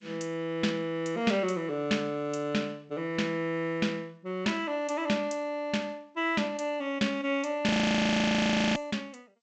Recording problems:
lossy compression; G.722, log-spectral distance 2 dB, nothing above 7.6 kHz
audio freezing; at 7.5 s for 1 s

